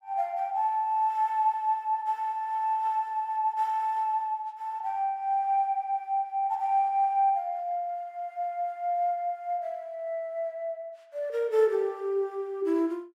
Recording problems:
none

